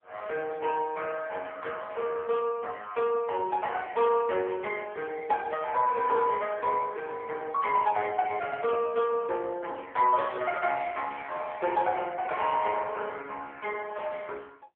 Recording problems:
phone line; 340 Hz to 2.8 kHz, AMR-NB

